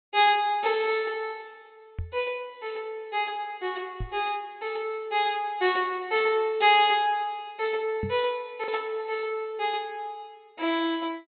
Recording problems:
treble missing; nothing above 4 kHz
lost packets; 0.4% of the sound replaced, filled with the last packet
knock on the microphone; at 2 s, at 4 s and at 8 s; peak -2 dB vs average level

